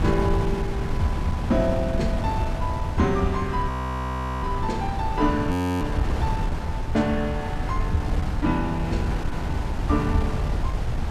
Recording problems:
wind on the microphone; below 160 Hz, SNR 1 dB
audio freezing; at 3.5 s for 0.5 s and at 5.5 s

